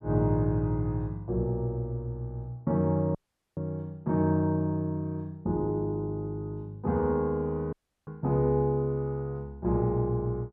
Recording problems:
audio cutting out; at 3 s and at 7.5 s

